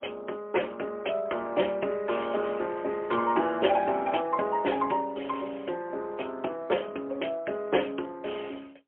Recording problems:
telephone audio; 240 Hz to 3.3 kHz, AMR-NB, then MP3

